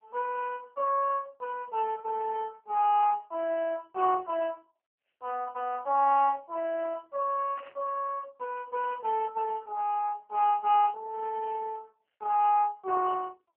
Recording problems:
telephone audio; 300 Hz to 2.8 kHz, AMR-NB
static burst; at 3 s and at 7.5 s; peak -12 dB vs average level

